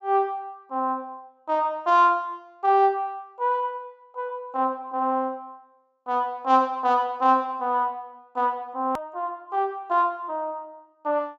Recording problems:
low-pass filter; nothing above 8 kHz
hard cut with a click; at 9 s

